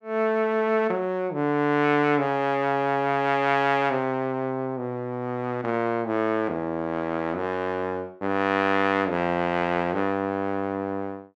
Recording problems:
none

